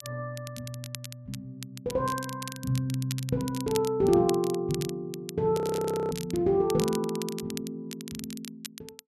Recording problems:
crackling; vinyl, SNR 13 dB
frozen audio; at 5.5 s for 0.5 s

